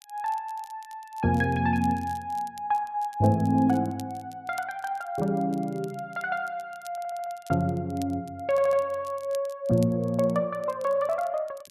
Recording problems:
crackling; vinyl, SNR 24 dB
audio stuttering; at 7 s and at 8.5 s

